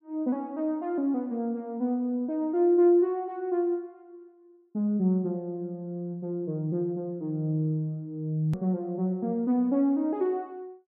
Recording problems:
click at an edit; at 8.5 s

